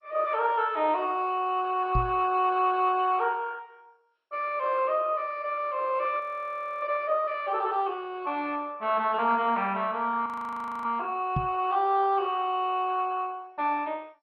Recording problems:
lossy codec; MP2, log-spectral distance 3 dB
microphone thump; at 2 s and at 11 s; peak +2 dB vs average level
audio freezing; at 6 s for 0.5 s and at 10 s for 0.5 s

